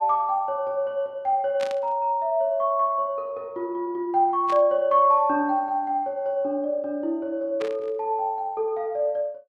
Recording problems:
static burst; at 1.5 s, at 4.5 s and at 7.5 s; peak -9 dB vs average level

